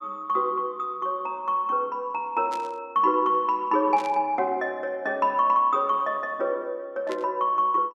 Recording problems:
static burst; at 2.5 s, at 4 s and at 7 s; peak -10 dB vs average level

